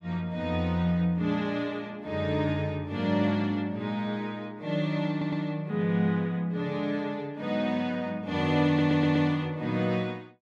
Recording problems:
stutter; at 5 s and at 8.5 s

